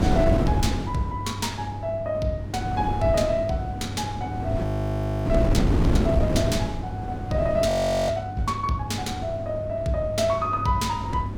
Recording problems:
hum; 50 Hz, harmonics up to 500 Hz, SNR 10 dB
wind on the microphone; below 300 Hz, SNR 2 dB
frozen audio; at 4.5 s for 0.5 s and at 7.5 s

